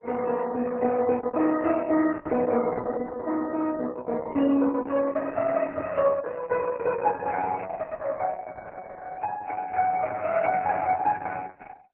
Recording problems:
lossy codec; MP3, then Opus, log-spectral distance 4 dB

